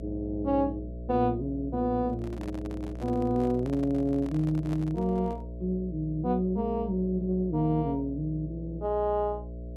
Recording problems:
electrical hum; 60 Hz, harmonics up to 660 Hz, SNR 11 dB
microphone handling noise; from 2 to 5.5 s; peak -8 dB vs average level

